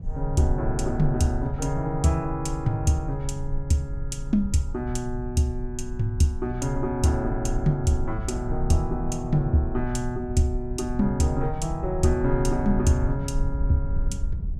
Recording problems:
rumble; below 62 Hz, SNR 7 dB

